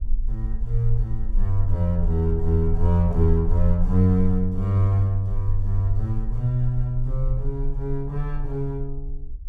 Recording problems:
rumble; below 38 Hz, strongest tone 20 Hz, SNR 7 dB

